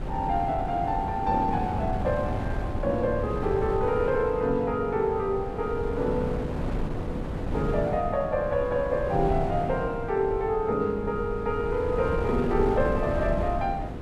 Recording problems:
wind on the microphone; below 330 Hz, SNR 6 dB

